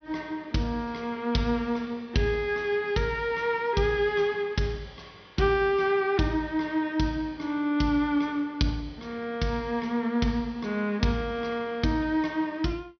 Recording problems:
treble missing; nothing above 5.9 kHz

